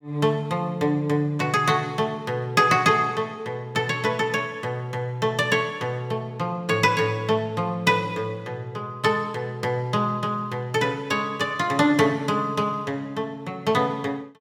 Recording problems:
none

